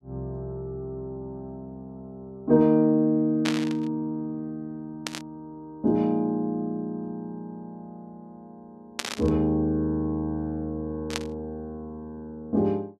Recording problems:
burst of static; 4 times, first at 3.5 s; peak +2 dB vs average level

